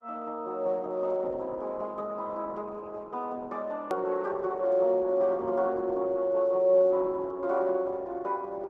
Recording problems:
lossy compression; Opus, log-spectral distance 2 dB, nothing above 13.1 kHz
hard cut with a click; at 4 s

